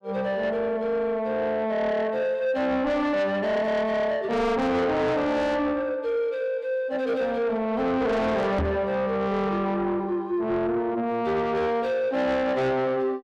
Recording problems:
distorted audio; soft clipping, signal-to-distortion ratio 8 dB
microphone bump; at 8.5 s; peak +3 dB vs average level

